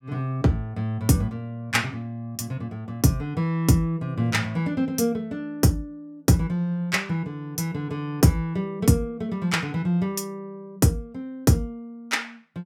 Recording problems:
none

